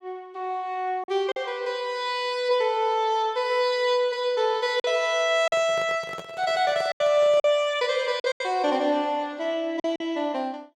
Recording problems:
packet loss; 5% of the sound replaced, filled with silence
handling noise; from 5.5 to 7.5 s; peak -10 dB vs average level

